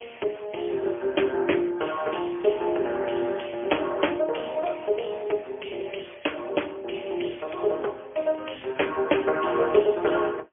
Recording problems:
telephone audio; 320 Hz to 3.3 kHz, AMR-NB, then MP3

